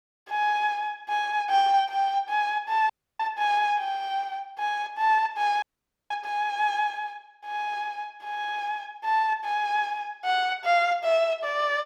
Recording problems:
audio cutting out; at 3 s and at 5.5 s

